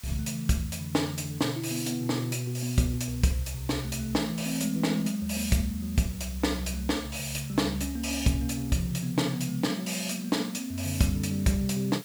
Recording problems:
background hiss; slope +2 dB per octave, SNR 16 dB

